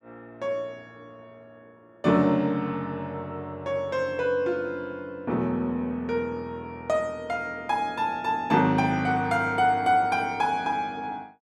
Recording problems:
none

